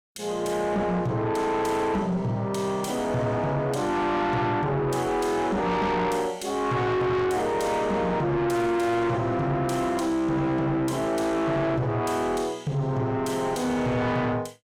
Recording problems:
distorted audio; soft clipping, signal-to-distortion ratio 7 dB

